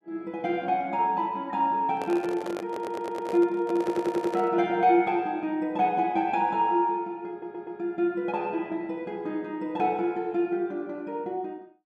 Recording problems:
handling noise; from 2 to 4.5 s; peak -5 dB vs average level
audio stuttering; at 2.5 s, at 4 s and at 7.5 s

